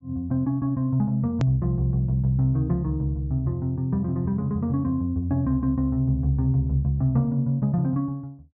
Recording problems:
low-pass filter; nothing above 8 kHz
hard cut with a click; at 1.5 s

